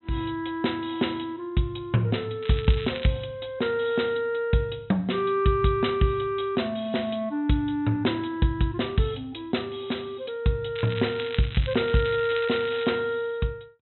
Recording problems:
low-pass filter; nothing above 3.9 kHz
crackle; at 2.5 s and from 11 to 13 s; loose cable, SNR 12 dB

